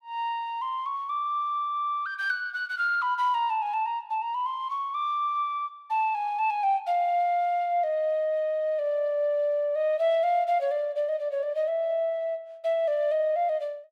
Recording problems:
none

